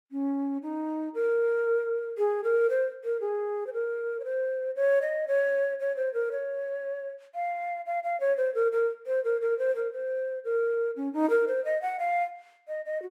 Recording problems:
none

